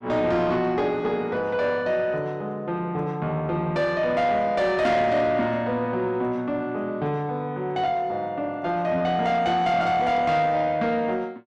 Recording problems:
distortion; soft clipping, signal-to-distortion ratio 11 dB

